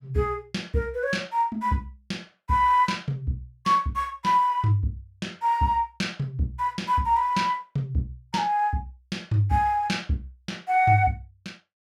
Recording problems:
none

